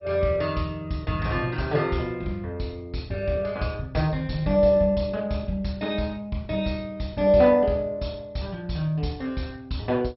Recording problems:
codec artefacts; MP2, log-spectral distance 3 dB, nothing above 5.5 kHz

